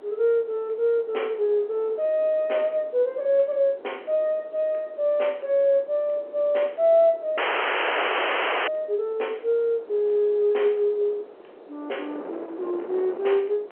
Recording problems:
telephone audio; 340 Hz to 3.2 kHz, G.711
wind noise; below 660 Hz, SNR 19 dB
dropout; at 7.5 s for 1.5 s

